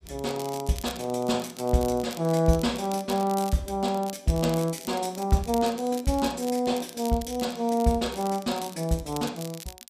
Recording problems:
crackling; vinyl, SNR 15 dB

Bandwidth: 14.5 kHz